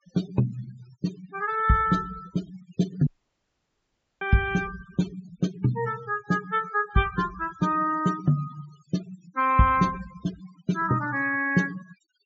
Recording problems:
low-pass filter; nothing above 8 kHz
denoising artefacts; signal-to-artefact ratio 16 dB
dropout; at 3 s for 1 s

